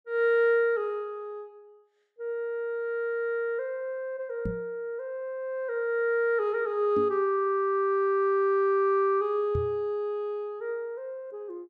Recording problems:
microphone thump; at 4.5 s, at 7 s and at 9.5 s; peak -1 dB vs average level

